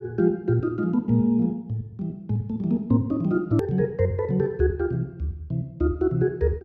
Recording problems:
edit click; at 3.5 s

